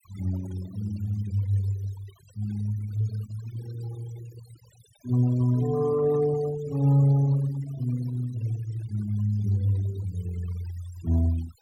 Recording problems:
denoising artefacts; signal-to-artefact ratio 20 dB

